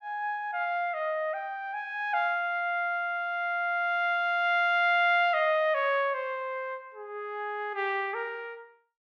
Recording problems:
none

